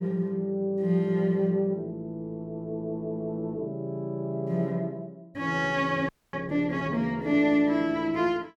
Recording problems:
audio freezing; at 6 s

